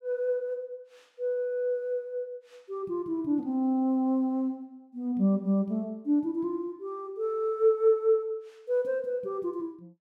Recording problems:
none

